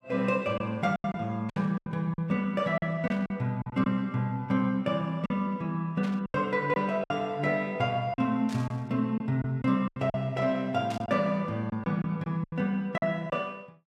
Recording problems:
lost packets; 9% of the sound replaced, filled with silence
static burst; 5 times, first at 1.5 s; peak -9 dB vs average level

